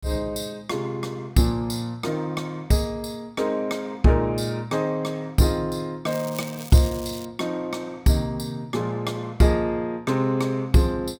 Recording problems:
crackle; from 6 to 7.5 s; loose cable, SNR 15 dB

